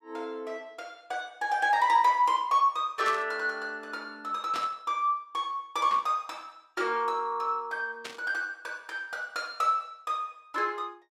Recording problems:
static burst; 4 times, first at 3 s; peak -5 dB vs average level

